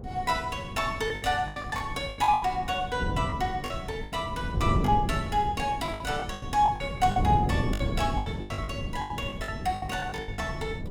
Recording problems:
wind on the microphone; below 230 Hz, SNR 5 dB
lost packets; 15% of the sound replaced, filled with the last packet

